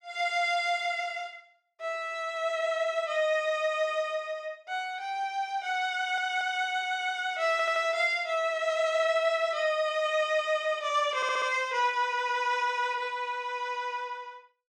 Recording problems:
audio stuttering; at 6 s, at 7.5 s and at 11 s

